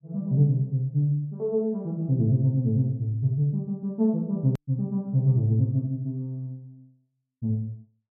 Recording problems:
click at an edit; at 4.5 s

